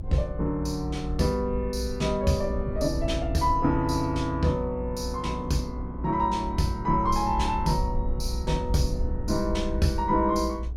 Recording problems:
rumble; below 64 Hz, SNR 7 dB
wind on the microphone; below 280 Hz, SNR 18 dB

